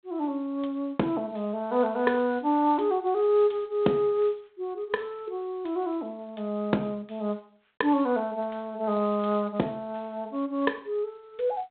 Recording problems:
phone line; 220 Hz to 3.9 kHz, G.726

